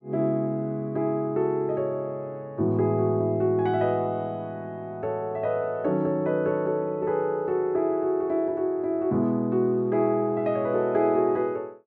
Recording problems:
none

